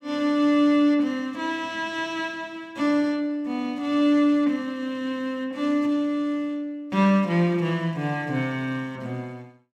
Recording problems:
none

